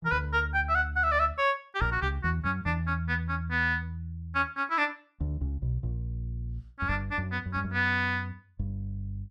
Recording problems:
none

